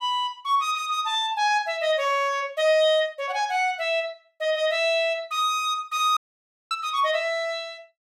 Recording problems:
audio cutting out; at 6 s for 0.5 s

